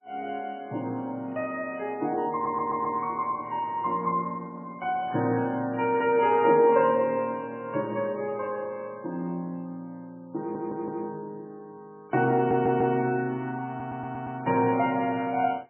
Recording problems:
lossy codec; MP3, log-spectral distance 2 dB, nothing above 2.5 kHz
audio stuttering; 4 times, first at 2.5 s

